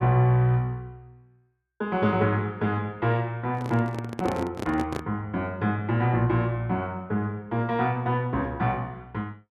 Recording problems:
handling noise; from 3.5 to 5 s; peak -1 dB vs average level

